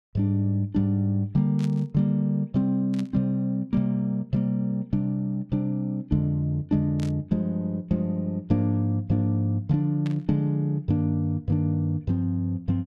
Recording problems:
static burst; 4 times, first at 1.5 s; peak -13 dB vs average level

